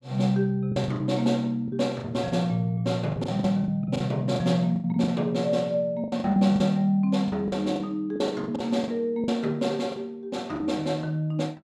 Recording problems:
packet loss; 11% of the sound replaced, filled with the last packet

